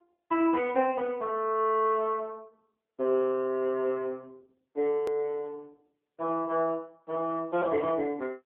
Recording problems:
phone line; 190 Hz to 3.3 kHz, AMR-NB
edit click; at 5 s

